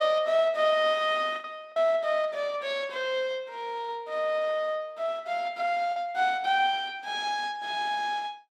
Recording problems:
lost packets; 1.9% of the sound replaced, filled with the last packet

